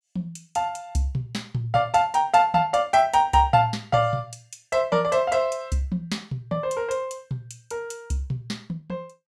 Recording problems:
none

